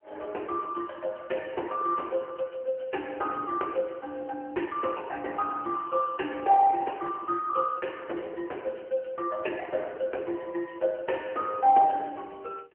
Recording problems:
telephone audio; 300 Hz to 3.1 kHz, AMR-NB

